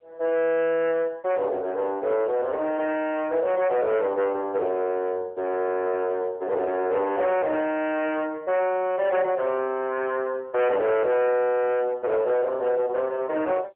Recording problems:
telephone audio; 370 Hz to 3.3 kHz, AMR-NB
distortion; hard clipping, uneven, signal-to-distortion ratio 12 dB

